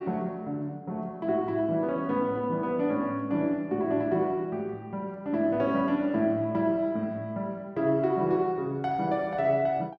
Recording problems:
none

